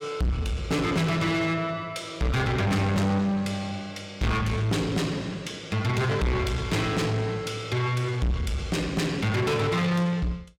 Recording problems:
distorted audio; soft clipping, signal-to-distortion ratio 6 dB

